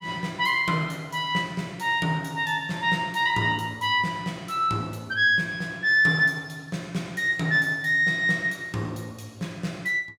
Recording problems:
none

